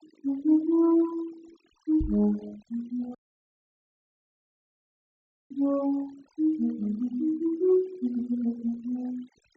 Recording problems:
treble missing; nothing above 8 kHz
denoising artefacts; signal-to-artefact ratio 25 dB
microphone thump; at 2 s; peak -2 dB vs average level
dropout; at 3 s for 2.5 s

